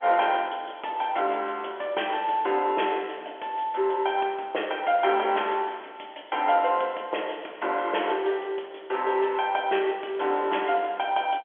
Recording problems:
phone line; 320 Hz to 3.4 kHz, G.711

